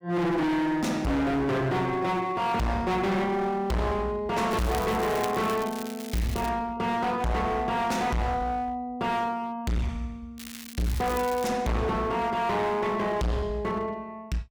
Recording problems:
distorted audio; hard clipping, uneven, signal-to-distortion ratio 5 dB
crackle; from 4.5 to 6.5 s and from 10 to 11 s; loose cable, SNR 14 dB

